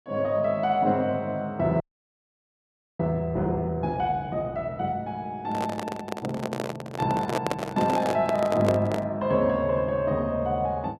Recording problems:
audio freezing; at 2 s for 1 s
microphone handling noise; from 5.5 to 9 s; peak +3 dB vs average level

